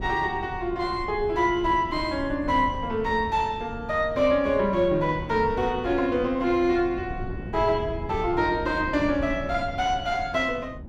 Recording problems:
wind noise; below 210 Hz, SNR 13 dB

